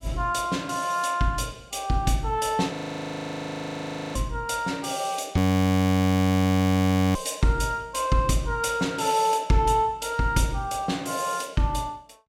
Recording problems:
audio freezing; at 3 s for 1.5 s and at 5.5 s for 2 s

